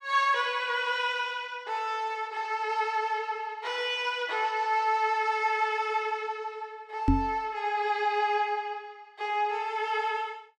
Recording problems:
microphone bump; at 7 s; peak +9 dB vs average level

